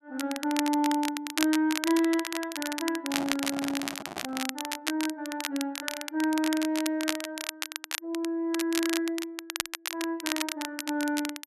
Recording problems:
crackling; vinyl, SNR 4 dB
microphone handling noise; from 3 to 4.5 s; peak -3 dB vs average level

